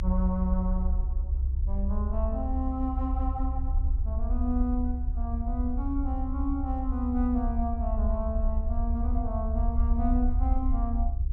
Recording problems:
low-pass filter; nothing above 8 kHz
hum; 50 Hz, harmonics up to 400 Hz, SNR 24 dB
low-frequency rumble; below 66 Hz, SNR -3 dB

